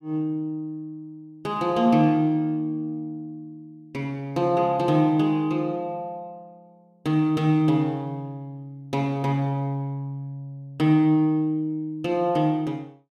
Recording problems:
none

